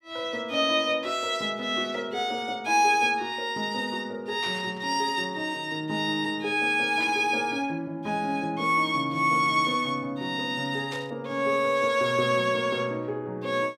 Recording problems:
burst of static; at 4.5 s, at 7 s and at 11 s; peak -9 dB vs average level

